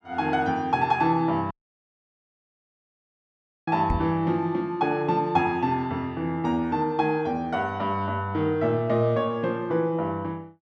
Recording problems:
audio cutting out; at 1.5 s for 2 s
microphone bump; at 4 s; peak +2 dB vs average level

